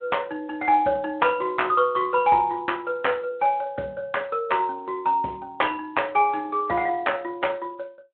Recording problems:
telephone audio; 190 Hz to 3.3 kHz, Speex

